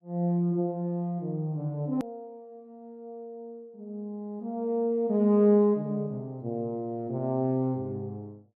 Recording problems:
click at an edit; at 2 s

